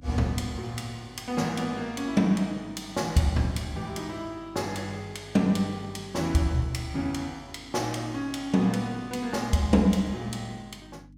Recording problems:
mains hum; 50 Hz, harmonics up to 300 Hz, SNR 23 dB

